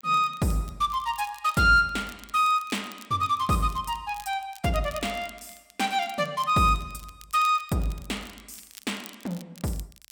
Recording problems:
crackling; vinyl, SNR 22 dB

